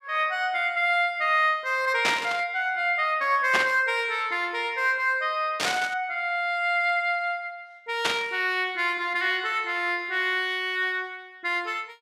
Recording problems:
burst of static; 4 times, first at 2 s; peak +4 dB vs average level

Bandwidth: 14.5 kHz